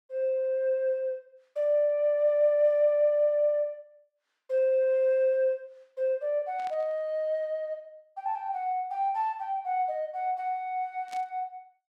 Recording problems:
burst of static; at 6.5 s and at 11 s; peak -15 dB vs average level

